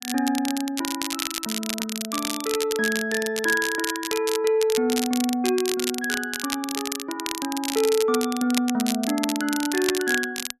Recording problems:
crackle; vinyl, SNR 5 dB

